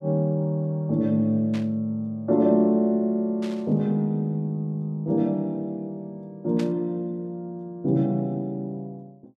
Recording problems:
burst of static; at 1.5 s, at 3.5 s and at 6.5 s; peak -10 dB vs average level

